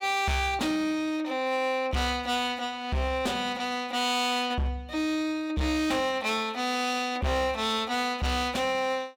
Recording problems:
distortion; hard clipping, signal-to-distortion ratio 10 dB

